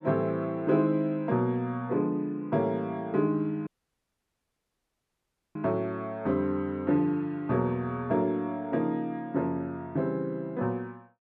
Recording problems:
dropout; at 3.5 s for 2 s

